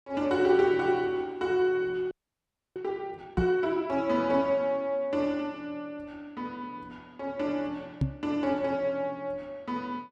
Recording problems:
audio freezing; at 2 s for 0.5 s
knock on the microphone; at 3.5 s and at 8 s; peak +5 dB vs average level

